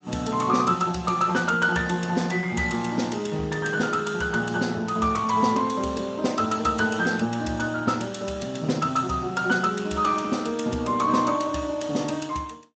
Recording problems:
lossy compression; Speex, log-spectral distance 5 dB, nothing above 7.8 kHz

